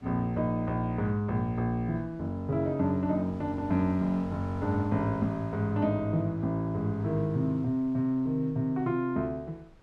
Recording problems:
wind on the microphone; below 570 Hz, SNR 24 dB

